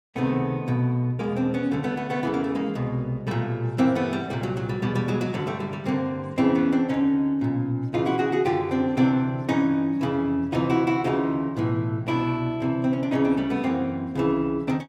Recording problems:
none

